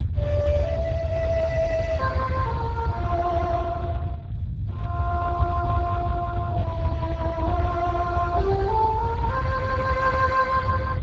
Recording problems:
lossy codec; Speex, log-spectral distance 3 dB
low-frequency rumble; below 120 Hz, SNR 4 dB

